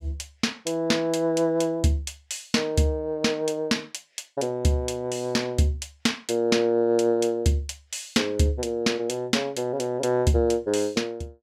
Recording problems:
none

